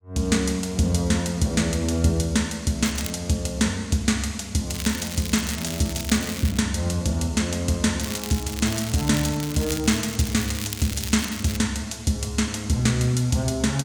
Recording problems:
crackle; at 3 s, from 4.5 to 6.5 s and from 8 to 12 s; loose cable, SNR 10 dB

